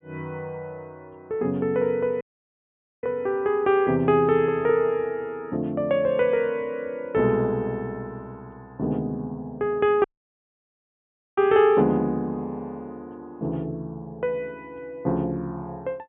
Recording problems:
treble missing; nothing above 3.5 kHz
dropout; at 2 s for 1 s and at 10 s for 1.5 s

